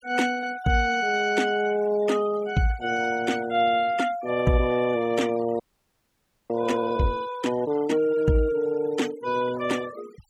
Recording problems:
noise reduction artefacts; signal-to-artefact ratio 19 dB
audio freezing; at 5.5 s for 1 s

